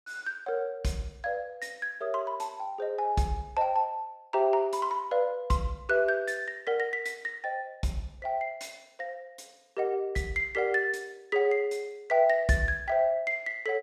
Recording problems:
none

